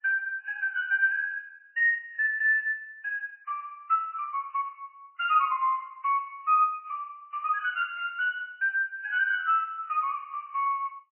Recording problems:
lossy compression; MP3, log-spectral distance 3 dB, nothing above 2.5 kHz

